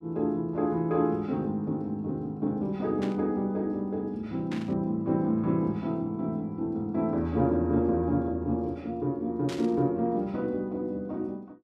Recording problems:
burst of static; at 3 s, at 4.5 s and at 9.5 s; peak -8 dB vs average level

